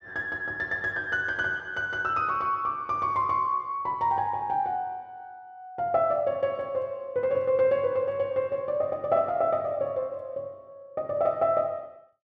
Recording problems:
none

